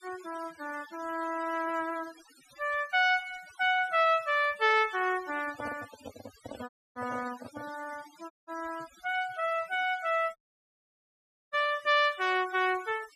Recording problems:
noise reduction artefacts; signal-to-artefact ratio 19 dB
microphone handling noise; from 5.5 to 8 s; peak -9 dB vs average level
audio cutting out; at 6.5 s, at 8.5 s and at 10 s for 1 s

